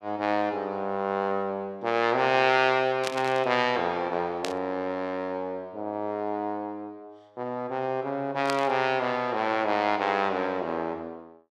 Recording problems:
static burst; at 3 s, at 4.5 s and at 8.5 s; peak 0 dB vs average level

